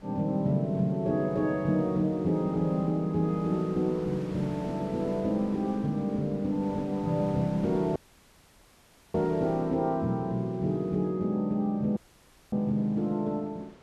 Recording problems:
wind on the microphone; below 1.3 kHz, SNR 20 dB
audio cutting out; at 8 s for 1 s and at 12 s for 0.5 s

